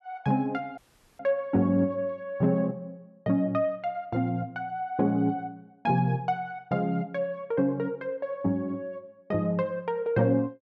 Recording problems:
audio cutting out; at 1 s

